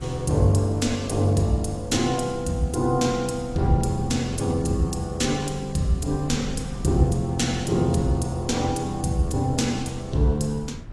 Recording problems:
lossy codec; AAC, log-spectral distance 3 dB, nothing above 11 kHz
wind on the microphone; below 130 Hz, SNR 15 dB

